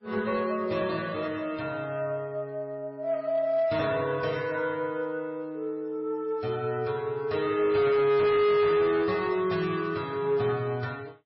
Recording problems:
lossy compression; MP3, log-spectral distance 2 dB, nothing above 4.6 kHz
distorted audio; hard clipping, signal-to-distortion ratio 12 dB

